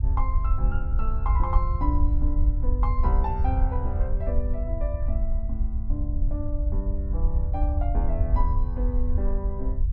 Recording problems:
rumble; below 68 Hz, SNR -7 dB

